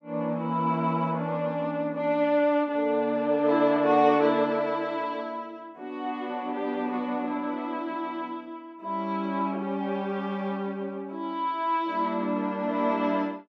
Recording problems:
none

